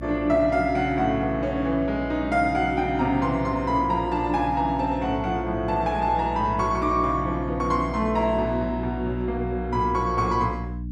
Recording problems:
electrical hum; 60 Hz, harmonics up to 300 Hz, SNR 10 dB

